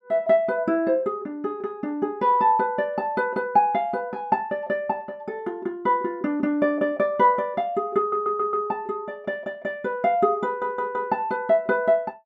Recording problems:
stutter; at 8 s and at 10 s

